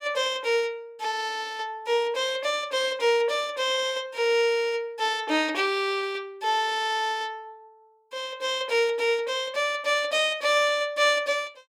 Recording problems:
none

